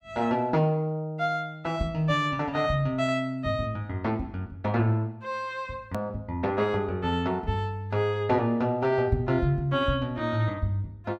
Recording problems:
edit click; at 6 s

